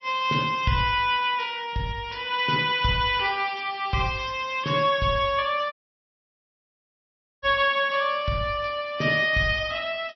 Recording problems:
codec artefacts; MP3, log-spectral distance 3 dB, nothing above 5.7 kHz
dropout; at 5.5 s for 1.5 s

